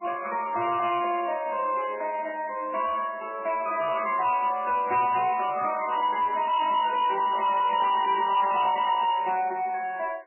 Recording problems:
codec artefacts; MP3, log-spectral distance 5 dB, nothing above 2.9 kHz
distorted audio; soft clipping, signal-to-distortion ratio 10 dB

